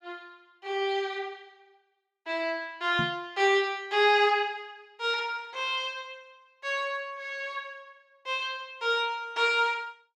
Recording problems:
microphone bump; at 3 s; peak -1 dB vs average level

